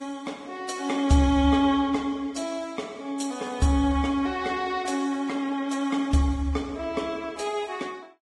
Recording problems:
lossy compression; Vorbis, log-spectral distance 3 dB, nothing above 10.7 kHz

